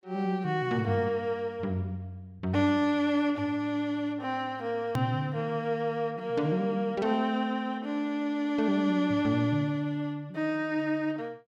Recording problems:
click at an edit; at 5 s

